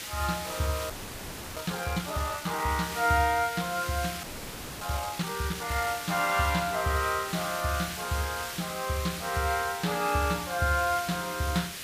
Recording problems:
hiss; slope +1 dB per octave, SNR 8 dB
frozen audio; at 1 s for 0.5 s and at 4 s for 0.5 s

